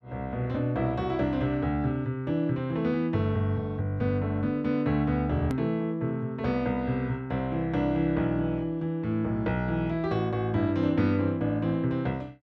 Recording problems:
click at an edit; at 5.5 s

